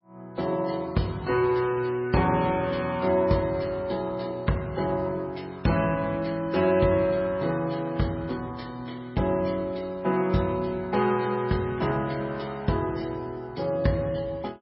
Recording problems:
lossy compression; MP3, log-spectral distance 3 dB, nothing above 4.8 kHz

